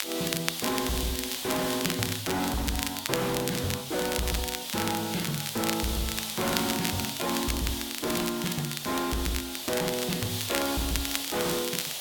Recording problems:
codec artefacts; MP3, log-spectral distance 5 dB
distortion; hard clipping, signal-to-distortion ratio 6 dB
background hiss; SNR 3 dB
crackling; vinyl, SNR 3 dB

